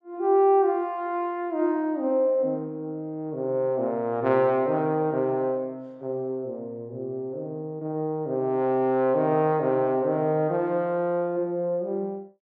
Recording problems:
none

